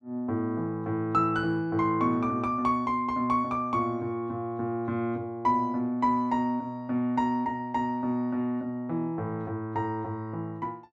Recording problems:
none

